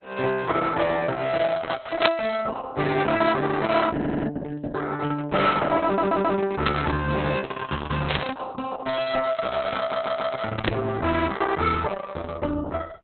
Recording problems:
codec artefacts; Opus, log-spectral distance 5 dB, nothing above 4 kHz
distorted audio; hard clipping, signal-to-distortion ratio 10 dB
packet loss; 5% of the sound replaced, filled with repeated pitch periods
static burst; 4 times, first at 2 s; peak +7 dB vs average level
audio stuttering; at 4 s, at 6 s and at 10 s

